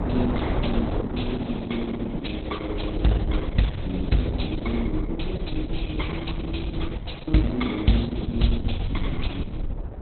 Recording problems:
lossy codec; Opus, log-spectral distance 7 dB, nothing above 4 kHz
rumble; below 74 Hz, SNR 6 dB
wind noise; below 490 Hz, SNR 8 dB

